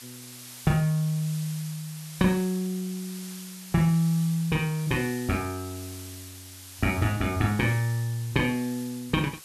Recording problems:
background hiss; slope +2 dB per octave, SNR 15 dB

